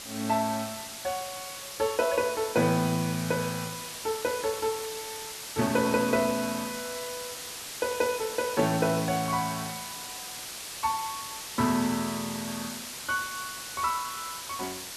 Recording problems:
background hiss; slope +1 dB per octave, SNR 7 dB

